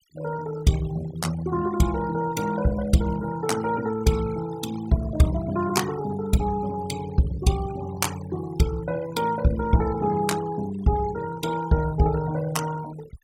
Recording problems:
denoising artefacts; signal-to-artefact ratio 15 dB

